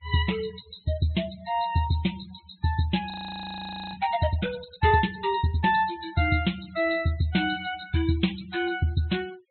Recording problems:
treble cut off; nothing above 4.2 kHz
denoising artefacts; signal-to-artefact ratio 20 dB
frozen audio; at 3 s for 1 s

